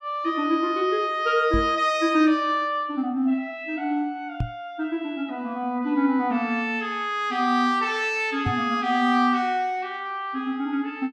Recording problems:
knock on the microphone; at 1.5 s, at 4.5 s and at 8.5 s; peak +1 dB vs average level

